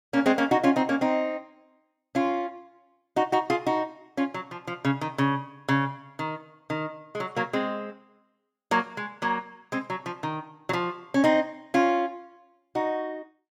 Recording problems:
none

